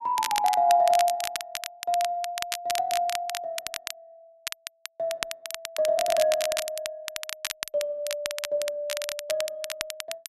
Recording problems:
crackling; vinyl, SNR 7 dB

